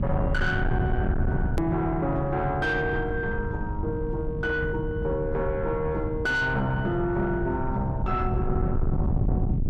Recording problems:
distortion; soft clipping, signal-to-distortion ratio 8 dB
electrical hum; 50 Hz, harmonics up to 950 Hz, SNR 16 dB
low-frequency rumble; below 150 Hz, SNR 3 dB
hard cut with a click; at 1.5 s

